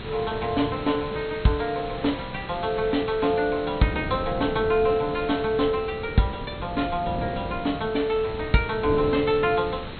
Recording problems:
treble missing; nothing above 4.3 kHz
background hiss; SNR 16 dB
wind noise; below 350 Hz, SNR 11 dB

